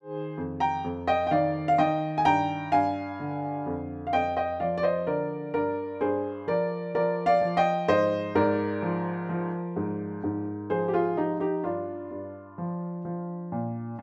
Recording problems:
none

